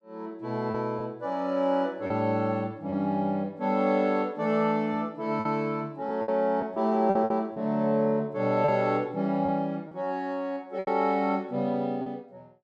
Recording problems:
lost packets; 5% of the sound replaced, filled with repeated pitch periods

